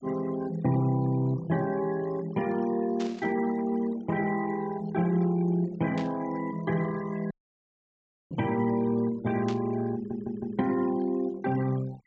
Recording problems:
treble missing; nothing above 8 kHz
noise reduction artefacts; signal-to-artefact ratio 19 dB
burst of static; at 3 s, at 6 s and at 9.5 s; peak -8 dB vs average level
dropout; at 7.5 s for 1 s
stutter; at 10 s

